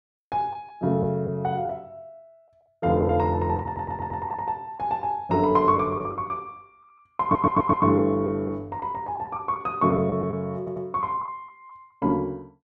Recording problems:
lost packets; 5% of the sound replaced, filled with the last packet
stutter; at 3.5 s, at 7 s and at 11 s

